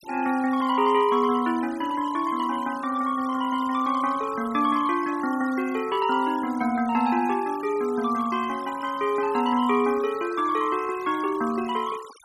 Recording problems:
denoising artefacts; signal-to-artefact ratio 19 dB

